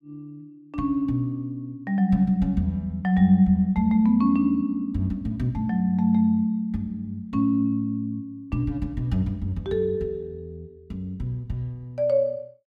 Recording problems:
none

